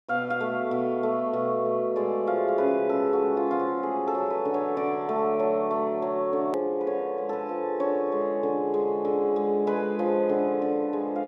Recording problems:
click at an edit; at 6.5 s

